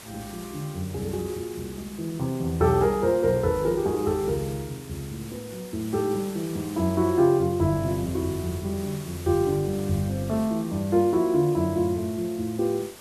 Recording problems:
hiss; slope -2 dB per octave, SNR 17 dB

